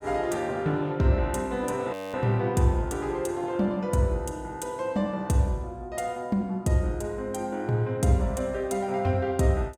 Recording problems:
audio freezing; at 2 s

